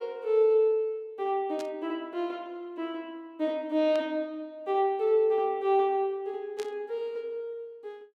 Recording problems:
burst of static; at 1.5 s, at 4 s and at 6.5 s; peak -10 dB vs average level

